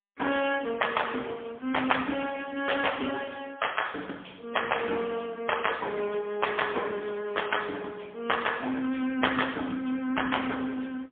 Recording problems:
phone line; 220 Hz to 3.4 kHz, AMR-NB, then MP3

